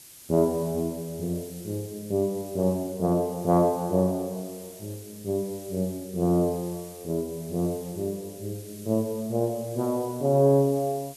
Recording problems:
background hiss; SNR 18 dB

